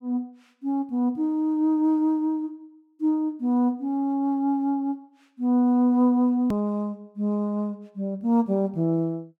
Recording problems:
edit click; at 6.5 s

